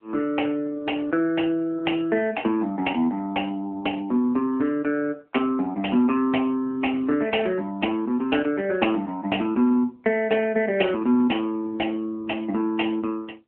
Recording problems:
telephone audio; 220 Hz to 3.2 kHz, AMR-NB

